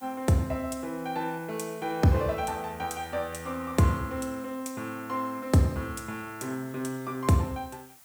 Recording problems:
hiss; slope 0 dB per octave, SNR 22 dB

